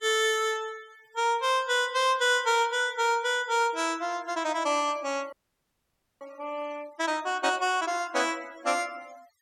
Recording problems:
denoising artefacts; signal-to-artefact ratio 24 dB
audio freezing; at 5.5 s for 1 s

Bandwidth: 17 kHz